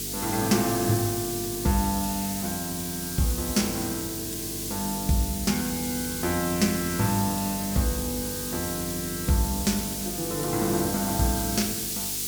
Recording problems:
electrical hum; 50 Hz, harmonics up to 450 Hz, SNR 12 dB
hiss; slope +6 dB per octave, SNR 3 dB

